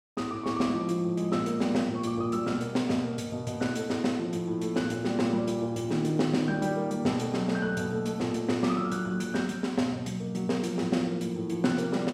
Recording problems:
none

